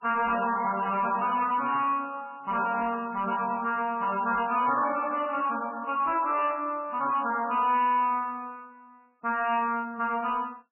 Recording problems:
lossy codec; MP3, log-spectral distance 4 dB, nothing above 2.9 kHz
distortion; soft clipping, signal-to-distortion ratio 10 dB

